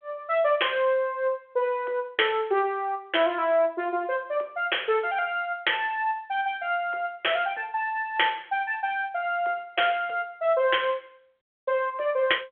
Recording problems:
telephone audio; 340 Hz to 3.4 kHz, G.726

